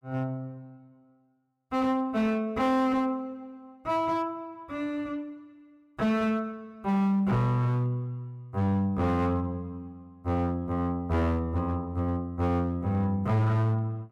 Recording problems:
distortion; hard clipping, signal-to-distortion ratio 11 dB

